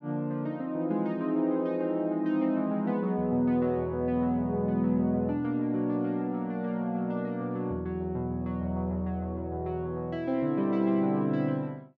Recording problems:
none

